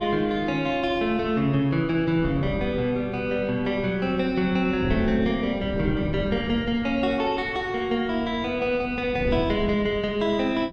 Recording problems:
wind noise; below 260 Hz, SNR 12 dB

